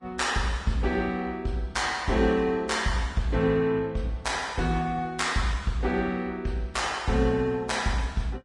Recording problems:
lossy codec; Vorbis, log-spectral distance 3 dB, nothing above 10.1 kHz

